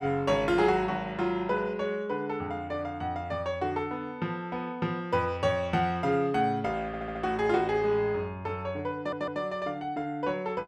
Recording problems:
stutter; at 7 s and at 9 s

